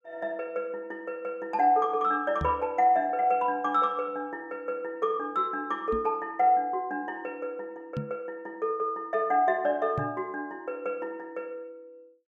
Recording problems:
knock on the microphone; 4 times, first at 2.5 s; peak -1 dB vs average level

